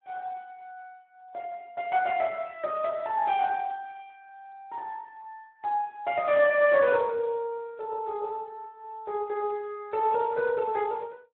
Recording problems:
telephone audio; 150 Hz to 2.8 kHz, Speex

